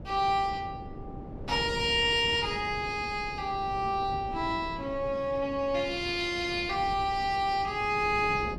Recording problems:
wind noise; below 350 Hz, SNR 14 dB

